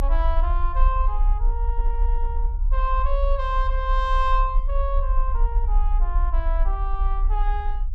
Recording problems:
rumble; below 42 Hz, strongest tone 32 Hz, SNR -4 dB

